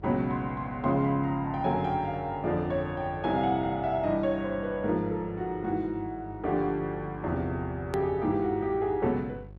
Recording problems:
electrical hum; 50 Hz, harmonics up to 750 Hz, SNR 18 dB
edit click; at 8 s

